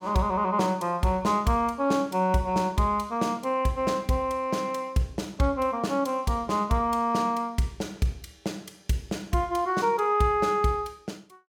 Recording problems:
none

